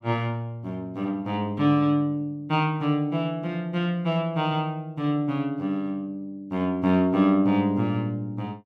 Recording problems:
none

